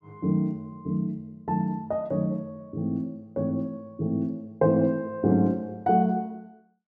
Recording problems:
none

